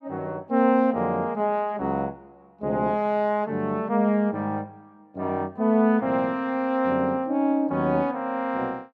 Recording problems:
none

